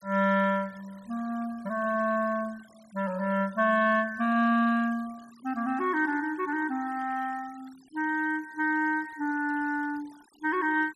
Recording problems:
noise reduction artefacts; signal-to-artefact ratio 25 dB

